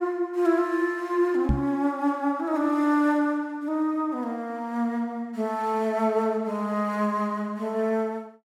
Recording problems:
microphone thump; at 1.5 s; peak +5 dB vs average level

